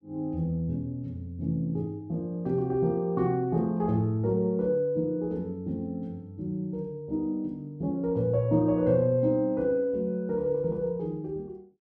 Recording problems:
none

